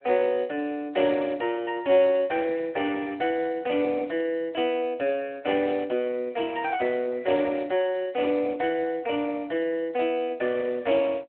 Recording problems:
telephone audio; 260 Hz to 3.3 kHz, Speex

